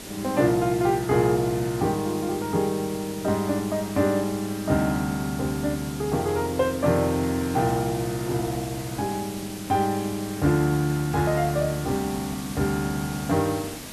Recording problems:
hiss; slope -3 dB per octave, SNR 12 dB

